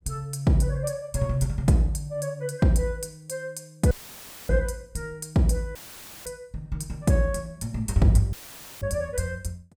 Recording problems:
dropout; at 4 s for 0.5 s, at 6 s for 0.5 s and at 8.5 s; filled with static

